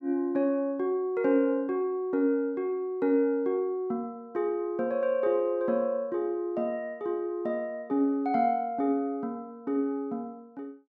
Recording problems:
none

